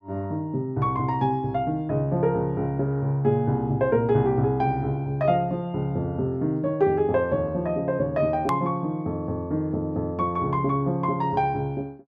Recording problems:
edit click; at 8.5 s

